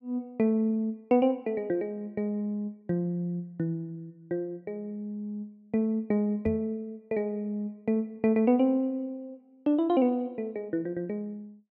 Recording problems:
knock on the microphone; at 6.5 s; peak -3 dB vs average level

